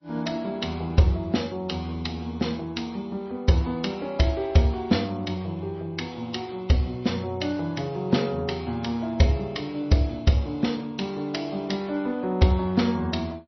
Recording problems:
codec artefacts; MP3, log-spectral distance 2 dB, nothing above 5.8 kHz

